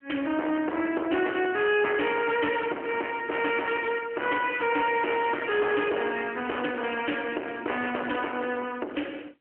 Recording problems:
telephone audio; 260 Hz to 3.2 kHz, AMR-NB
distortion; hard clipping, signal-to-distortion ratio 7 dB

